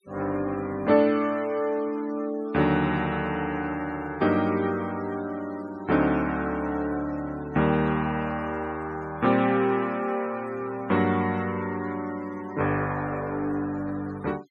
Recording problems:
noise reduction artefacts; signal-to-artefact ratio 21 dB

